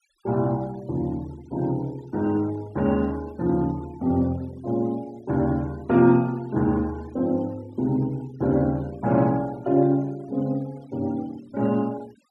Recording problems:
noise reduction artefacts; signal-to-artefact ratio 26 dB

